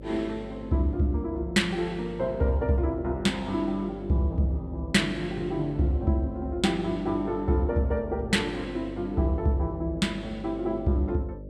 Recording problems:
electrical hum; 50 Hz, harmonics up to 600 Hz, SNR 14 dB

